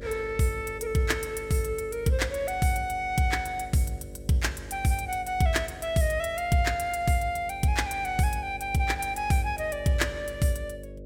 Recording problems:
hum; 50 Hz, harmonics up to 600 Hz, SNR 16 dB

